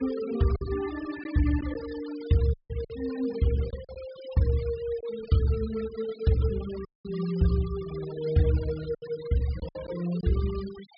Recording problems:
low-pass filter; nothing above 5.5 kHz
noise reduction artefacts; signal-to-artefact ratio 18 dB
lost packets; 4% of the sound replaced, filled with silence
audio cutting out; at 2.5 s and at 7 s

